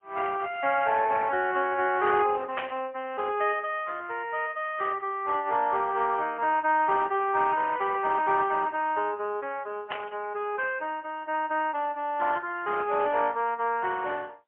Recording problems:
phone line; 320 Hz to 3.2 kHz, AMR-NB, then MP3
burst of static; at 2.5 s and at 10 s; peak -1 dB vs average level

